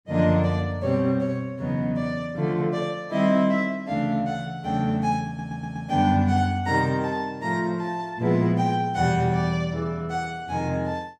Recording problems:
stutter; at 5.5 s

